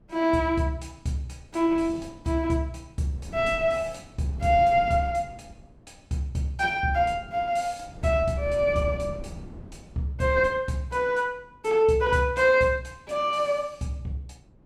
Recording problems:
wind on the microphone; below 250 Hz, SNR 17 dB

